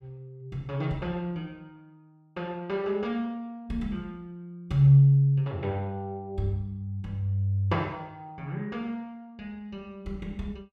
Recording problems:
none

